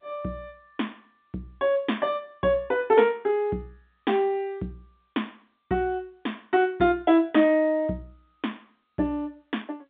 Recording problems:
phone line; 130 Hz to 3.6 kHz, G.711

